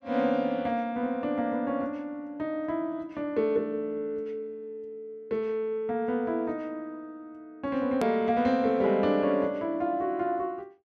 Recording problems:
edit click; at 8 s

